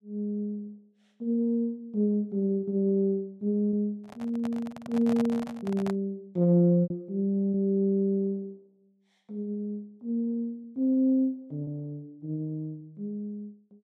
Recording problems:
packet loss; 2% of the sound replaced, filled with repeated pitch periods
microphone handling noise; from 4 to 6 s; peak -4 dB vs average level

